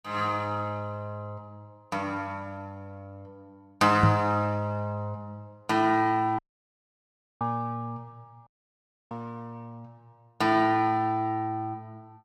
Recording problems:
microphone bump; at 4 s; peak +8 dB vs average level
audio cutting out; at 6.5 s for 1 s and at 8.5 s for 0.5 s

